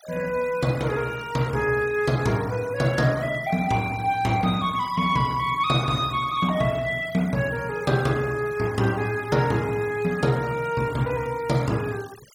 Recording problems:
noise reduction artefacts; signal-to-artefact ratio 20 dB

